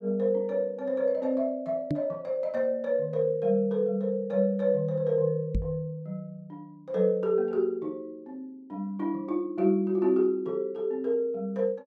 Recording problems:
knock on the microphone; at 2 s and at 5.5 s; peak +2 dB vs average level

